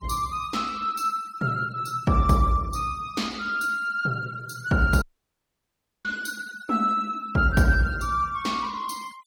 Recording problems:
noise reduction artefacts; signal-to-artefact ratio 22 dB
audio cutting out; at 5 s for 1 s

